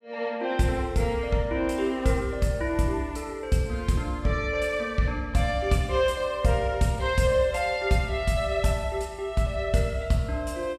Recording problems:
none

